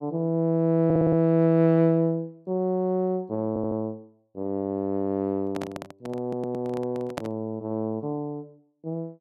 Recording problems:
audio stuttering; at 1 s, at 3.5 s and at 6 s
handling noise; from 5.5 to 7.5 s; peak -2 dB vs average level

